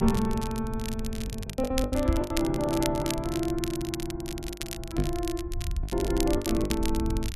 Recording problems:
low-frequency rumble; below 78 Hz, SNR 7 dB
crackling; vinyl, SNR 9 dB
packet loss; 11% of the sound replaced, filled with the last packet
knock on the microphone; at 2 s and at 5 s; peak +6 dB vs average level

